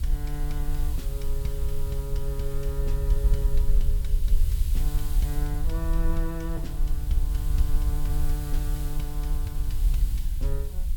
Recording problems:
background hiss; slope +2 dB per octave, SNR 8 dB
rumble; below 50 Hz, SNR -7 dB
wind noise; below 230 Hz, SNR 20 dB

